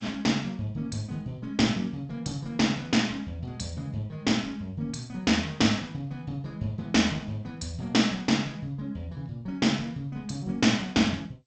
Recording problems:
lossy compression; G.722, log-spectral distance 2 dB, nothing above 7.8 kHz

